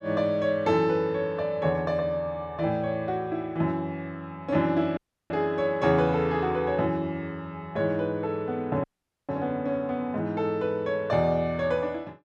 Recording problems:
audio cutting out; at 5 s and at 9 s

